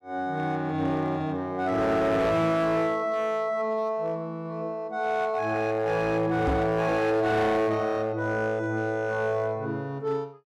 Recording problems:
distortion; hard clipping, signal-to-distortion ratio 11 dB
microphone thump; at 6.5 s; peak +3 dB vs average level

